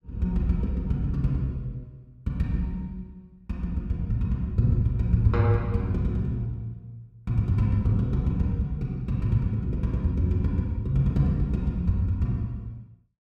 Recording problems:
none

